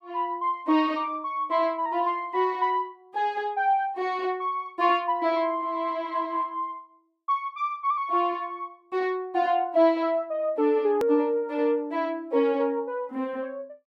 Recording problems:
edit click; at 11 s

